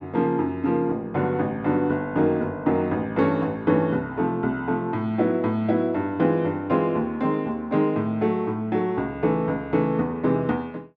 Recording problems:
none

